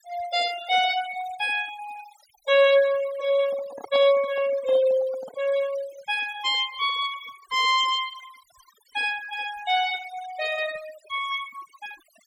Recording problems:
noise reduction artefacts; signal-to-artefact ratio 17 dB
handling noise; from 3.5 to 5.5 s; peak -10 dB vs average level

